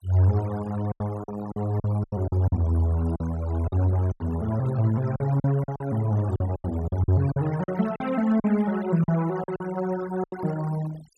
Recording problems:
noise reduction artefacts; signal-to-artefact ratio 17 dB
packet loss; 11% of the sound replaced, filled with silence

